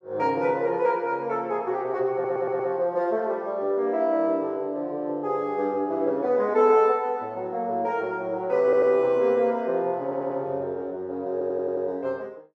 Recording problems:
audio stuttering; 4 times, first at 2 s

